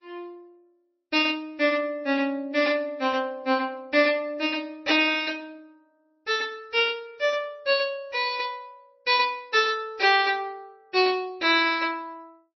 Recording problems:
lossy codec; MP3, log-spectral distance 2 dB, nothing above 5.3 kHz

